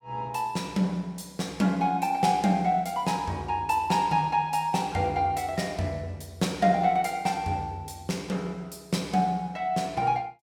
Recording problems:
none

